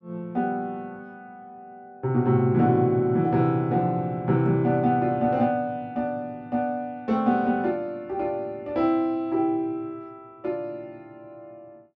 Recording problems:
none

